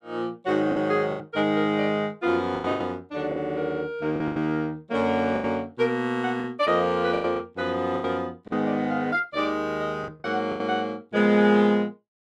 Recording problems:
lost packets; 8% of the sound replaced, filled with the last packet

